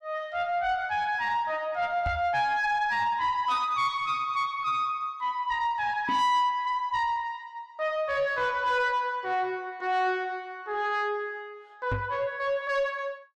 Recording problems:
distorted audio; soft clipping, signal-to-distortion ratio 11 dB
knock on the microphone; at 2 s, at 6 s and at 12 s; peak 0 dB vs average level

